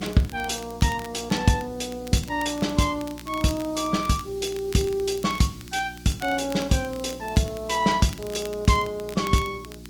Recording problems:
lossy codec; Opus, log-spectral distance 4 dB, nothing above 18.9 kHz
electrical hum; 60 Hz, harmonics up to 360 Hz, SNR 18 dB
background hiss; slope +2 dB per octave, SNR 26 dB
crackling; vinyl, SNR 19 dB

